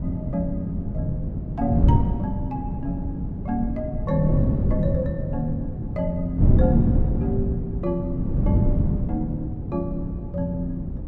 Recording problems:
wind noise; below 180 Hz, SNR -3 dB

